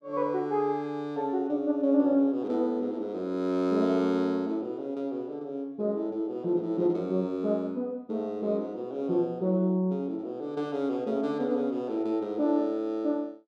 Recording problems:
none

